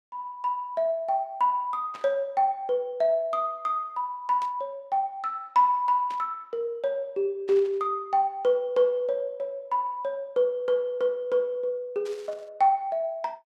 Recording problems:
static burst; 5 times, first at 2 s; peak -13 dB vs average level

